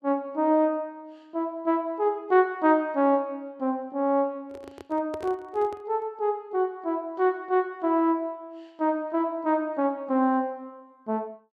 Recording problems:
handling noise; from 4.5 to 6 s; peak -8 dB vs average level

